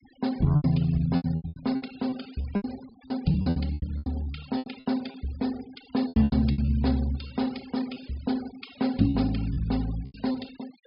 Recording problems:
low-pass filter; nothing above 5.5 kHz
noise reduction artefacts; signal-to-artefact ratio 21 dB
lost packets; 14% of the sound replaced, filled with repeated pitch periods

